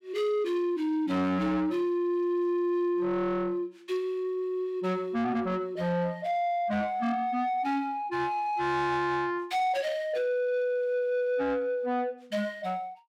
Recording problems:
distorted audio; soft clipping, signal-to-distortion ratio 12 dB

